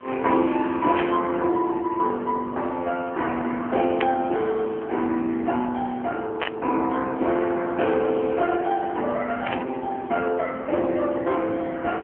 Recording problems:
phone line; 220 Hz to 3.2 kHz, AMR-NB
background hiss; SNR 28 dB
burst of static; 4 times, first at 1 s; peak +1 dB vs average level

